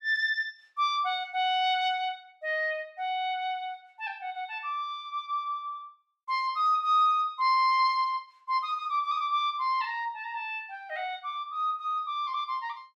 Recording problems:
none

